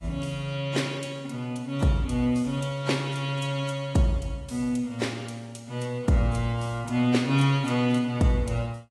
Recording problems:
codec artefacts; AAC, log-spectral distance 2 dB, nothing above 11 kHz

